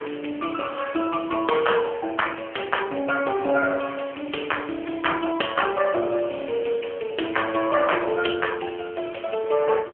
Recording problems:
phone line; 220 Hz to 3.2 kHz, AMR-NB

